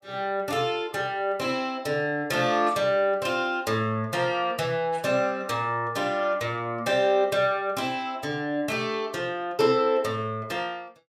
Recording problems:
none

